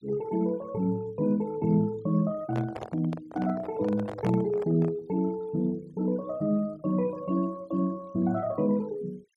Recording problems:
noise reduction artefacts; signal-to-artefact ratio 25 dB
handling noise; from 2.5 to 5 s; peak -4 dB vs average level

